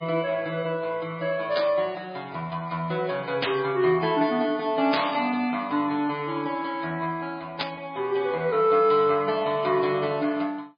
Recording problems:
codec artefacts; MP3, log-spectral distance 3 dB, nothing above 4.2 kHz
static burst; 4 times, first at 1.5 s; peak +2 dB vs average level

